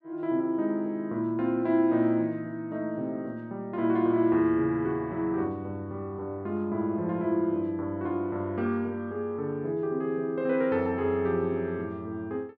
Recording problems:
none

